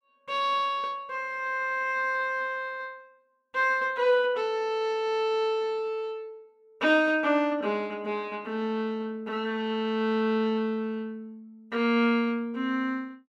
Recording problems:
none

